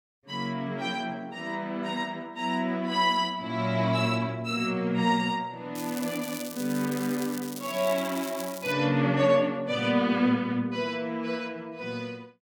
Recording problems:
crackle; from 6 to 8.5 s; loose cable, SNR 12 dB

